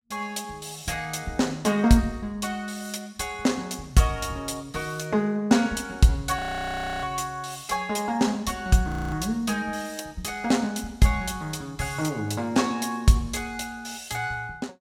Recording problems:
audio freezing; at 6.5 s for 0.5 s and at 9 s

